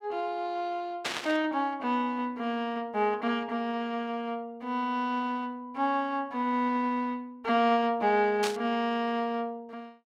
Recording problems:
burst of static; at 1 s and at 8.5 s; peak +2 dB vs average level

